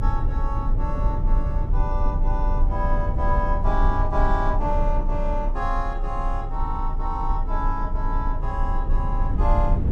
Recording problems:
low-frequency rumble; below 52 Hz, strongest tone 28 Hz, SNR -3 dB

